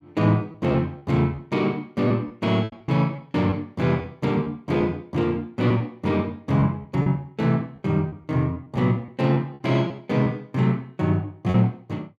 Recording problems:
packet loss; 7% of the sound replaced, filled with repeated pitch periods

